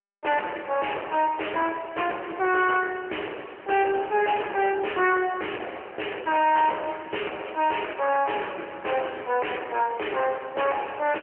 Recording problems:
phone line; 320 Hz to 3.1 kHz, AMR-NB
distorted audio; soft clipping, signal-to-distortion ratio 8 dB

